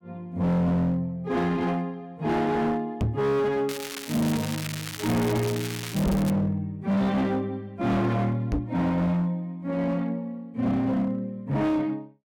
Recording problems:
distorted audio; hard clipping, signal-to-distortion ratio 7 dB
microphone thump; at 3 s, at 6 s and at 8.5 s; peak +6 dB vs average level
crackling; from 3.5 to 6.5 s; loose cable, SNR 9 dB

